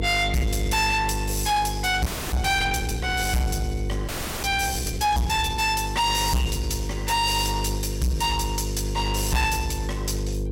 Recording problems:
distortion; soft clipping, signal-to-distortion ratio 8 dB
hum; 50 Hz, harmonics up to 500 Hz, SNR 6 dB
frozen audio; at 2 s and at 4 s

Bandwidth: 16.5 kHz